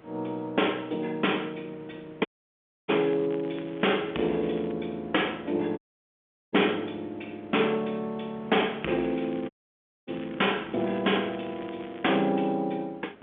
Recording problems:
telephone audio; 220 Hz to 3.5 kHz, G.711
distortion; soft clipping, signal-to-distortion ratio 12 dB
wind noise; below 1.1 kHz, SNR 20 dB
dropout; at 2.5 s for 0.5 s, at 6 s for 0.5 s and at 9.5 s for 0.5 s
crackle; from 3 to 4 s, at 4.5 s and from 8.5 to 12 s; loose cable, SNR 22 dB

